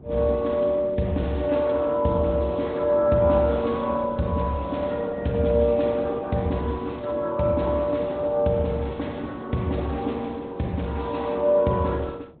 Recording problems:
treble cut off; nothing above 3.9 kHz
codec artefacts; Opus, log-spectral distance 3 dB
wind on the microphone; below 410 Hz, SNR 18 dB

